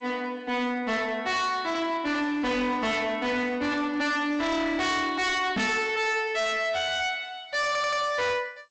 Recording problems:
lossy compression; G.722, log-spectral distance 2 dB, nothing above 7.6 kHz
distorted audio; hard clipping, signal-to-distortion ratio 7 dB
microphone thump; at 5.5 s; peak +2 dB vs average level
stutter; at 7.5 s

